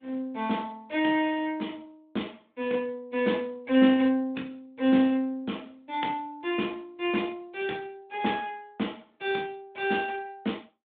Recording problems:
phone line; 190 Hz to 3.6 kHz, Speex

